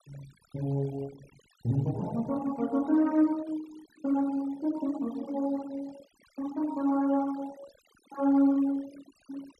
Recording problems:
noise reduction artefacts; signal-to-artefact ratio 22 dB

